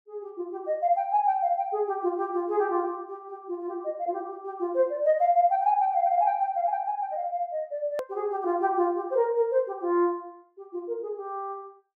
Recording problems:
click at an edit; at 8 s

